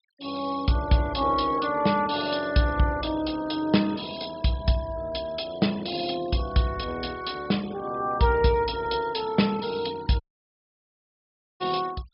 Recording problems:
treble missing; nothing above 5.5 kHz
noise reduction artefacts; signal-to-artefact ratio 20 dB
dropout; at 10 s for 1.5 s

